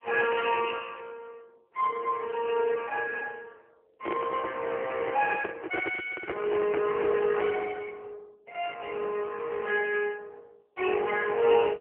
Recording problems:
telephone audio; 300 Hz to 2.9 kHz, AMR-NB
microphone handling noise; from 4 to 7.5 s; peak 0 dB vs average level

